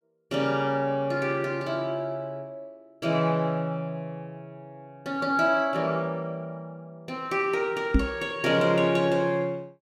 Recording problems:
knock on the microphone; at 8 s; peak +8 dB vs average level

